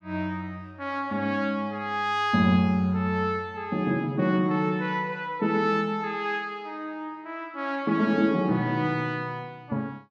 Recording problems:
none

